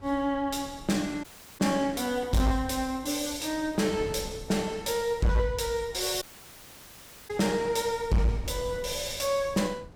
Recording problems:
distorted audio; hard clipping, signal-to-distortion ratio 12 dB
wind on the microphone; below 250 Hz, SNR 18 dB
audio cutting out; at 1 s and at 6 s for 1 s

